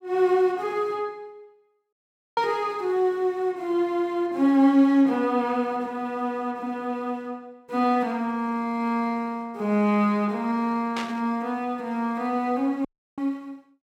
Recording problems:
dropout; at 2 s and at 13 s
burst of static; at 11 s; peak -4 dB vs average level

